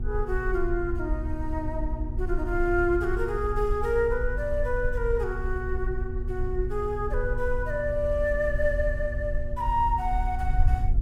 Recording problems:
hum; 60 Hz, harmonics up to 840 Hz, SNR 13 dB
wind noise; below 60 Hz, SNR 4 dB

